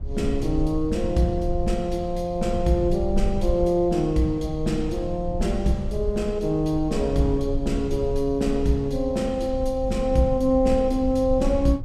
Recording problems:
rumble; below 64 Hz, SNR 9 dB

